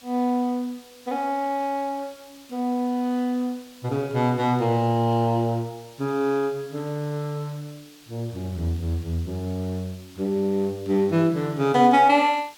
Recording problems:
hiss; slope +1 dB per octave, SNR 24 dB

